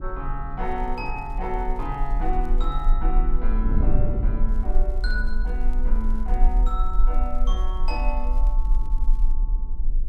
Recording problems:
rumble; below 38 Hz, strongest tone 22 Hz, SNR -5 dB
wind on the microphone; below 180 Hz, SNR 5 dB
crackling; from 0.5 to 3 s and from 4.5 to 9.5 s; loose cable, SNR 28 dB

